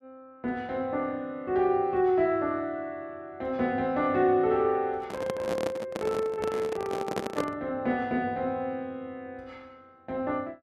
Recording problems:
handling noise; from 5 to 7.5 s; peak +2 dB vs average level

